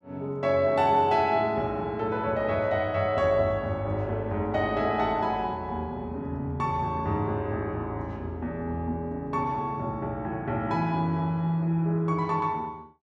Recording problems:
none

